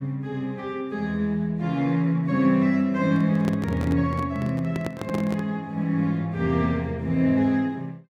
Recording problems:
handling noise; from 3 to 5.5 s; peak -3 dB vs average level

